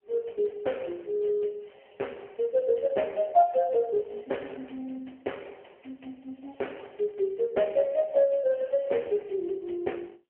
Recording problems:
telephone audio; 280 Hz to 3.1 kHz, AMR-NB

